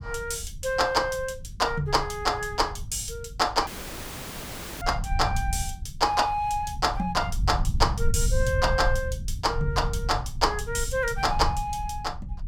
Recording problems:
low-frequency rumble; below 92 Hz, SNR 6 dB
dropout; at 3.5 s for 1 s

